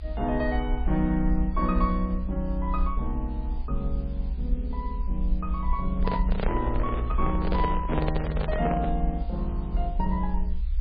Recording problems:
codec artefacts; MP3, log-spectral distance 2 dB, nothing above 4.5 kHz
background hiss; SNR 27 dB
low-frequency rumble; below 58 Hz, SNR 1 dB
handling noise; from 6 to 9 s; peak +4 dB vs average level

